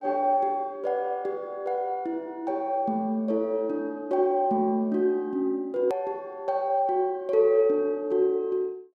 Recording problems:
click at an edit; at 6 s

